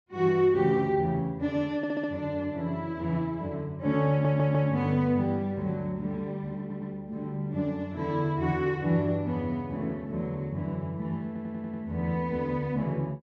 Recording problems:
stutter; 4 times, first at 2 s

